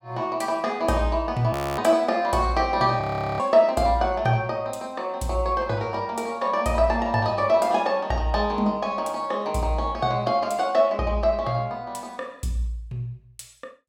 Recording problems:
audio freezing; at 1.5 s and at 3 s

